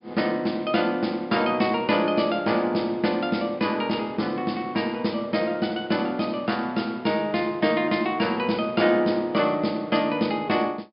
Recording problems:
treble missing; nothing above 5.5 kHz

